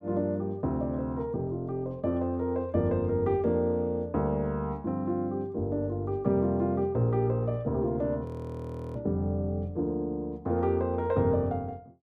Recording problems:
audio freezing; at 8.5 s for 0.5 s

